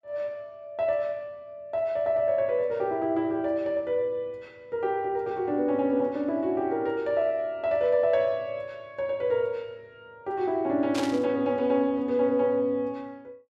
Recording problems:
static burst; at 11 s; peak -3 dB vs average level

